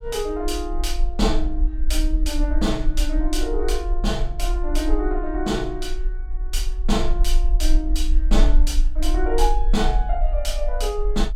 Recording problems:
rumble; below 42 Hz, SNR -1 dB

